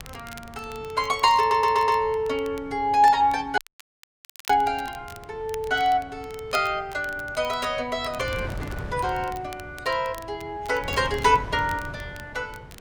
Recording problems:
wind on the microphone; below 390 Hz, SNR 17 dB
crackle; vinyl, SNR 22 dB
audio stuttering; at 1.5 s
dropout; at 3.5 s for 1 s

